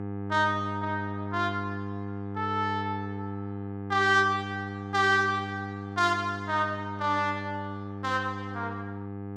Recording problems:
hum; 50 Hz, harmonics up to 1.3 kHz, SNR 8 dB

